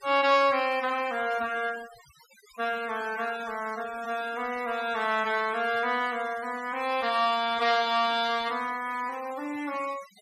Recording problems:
noise reduction artefacts; signal-to-artefact ratio 18 dB

